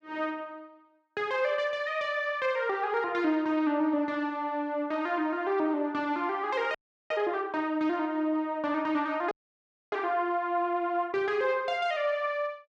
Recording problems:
frozen audio; at 7 s and at 9.5 s for 0.5 s

